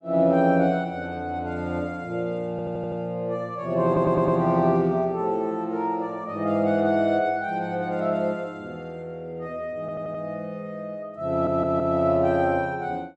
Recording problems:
stutter; 4 times, first at 2.5 s

